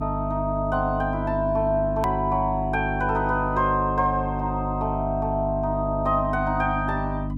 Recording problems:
hum; 50 Hz, harmonics up to 300 Hz, SNR 5 dB
hard cut with a click; at 2 s

